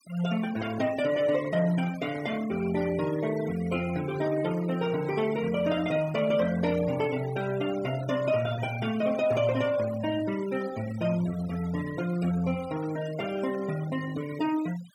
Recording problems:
noise reduction artefacts; signal-to-artefact ratio 16 dB

